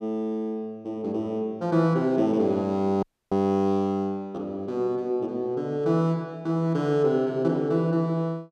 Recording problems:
dropout; at 3 s

